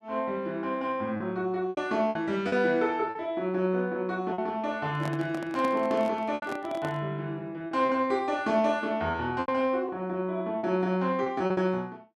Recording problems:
lost packets; 7% of the sound replaced, filled with repeated pitch periods
handling noise; from 5 to 7 s; peak -4 dB vs average level

